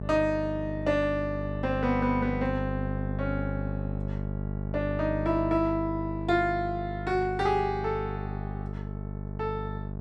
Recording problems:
electrical hum; 50 Hz, harmonics up to 850 Hz, SNR 5 dB

